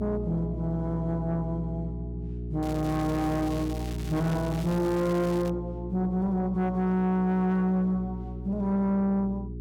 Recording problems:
distorted audio; soft clipping, signal-to-distortion ratio 11 dB
hum; 60 Hz, harmonics up to 420 Hz, SNR 8 dB
crackling; from 2.5 to 5.5 s; loose cable, SNR 17 dB

